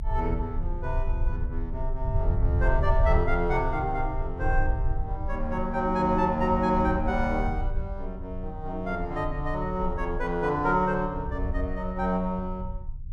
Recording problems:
low-frequency rumble; below 70 Hz, strongest tone 26 Hz, SNR 4 dB

